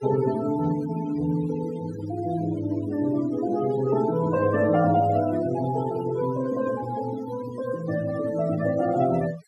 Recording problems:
denoising artefacts; signal-to-artefact ratio 16 dB

